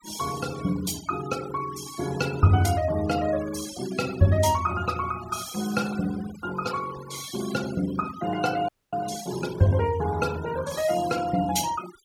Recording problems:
noise reduction artefacts; signal-to-artefact ratio 15 dB
frozen audio; at 8.5 s

